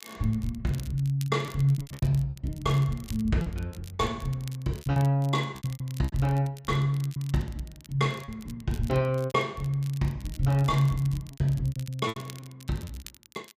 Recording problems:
crackling; vinyl, SNR 21 dB
packet loss; 11% of the sound replaced, filled with repeated pitch periods

